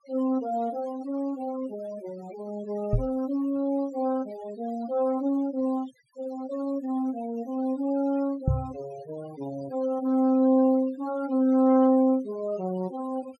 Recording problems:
denoising artefacts; signal-to-artefact ratio 22 dB
knock on the microphone; at 3 s and at 8.5 s; peak +6 dB vs average level

